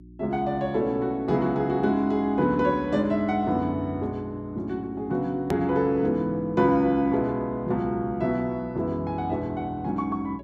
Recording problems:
hum; 60 Hz, harmonics up to 360 Hz, SNR 22 dB
edit click; at 5.5 s

